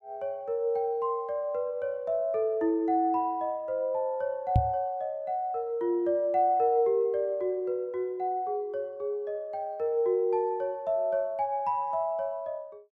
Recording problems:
microphone thump; at 4.5 s; peak +8 dB vs average level

